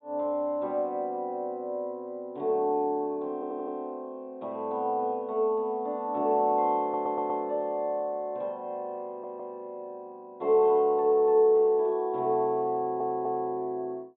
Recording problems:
treble missing; nothing above 4 kHz
audio stuttering; 4 times, first at 3.5 s

